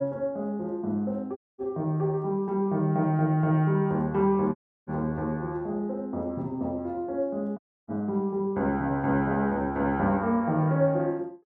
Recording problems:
audio cutting out; at 1.5 s, at 4.5 s and at 7.5 s

